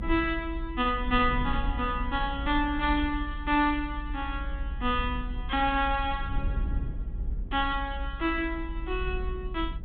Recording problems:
treble cut off; nothing above 4 kHz
rumble; below 58 Hz, SNR 6 dB

